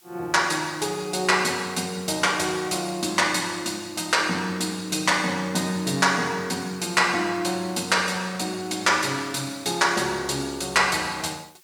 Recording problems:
background hiss; slope +2 dB per octave, SNR 30 dB

